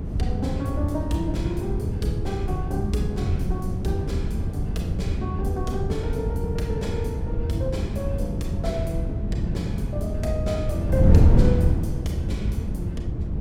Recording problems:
electrical hum; 50 Hz, harmonics up to 450 Hz, SNR 10 dB
wind noise; below 140 Hz, SNR -5 dB

